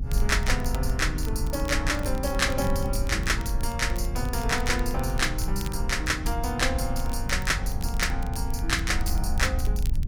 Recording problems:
low-frequency rumble; below 68 Hz, SNR 3 dB
wind noise; below 170 Hz, SNR 12 dB
crackle; vinyl, SNR 19 dB

